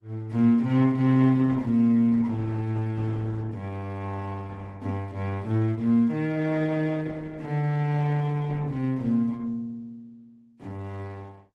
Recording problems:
codec artefacts; Opus, log-spectral distance 2 dB

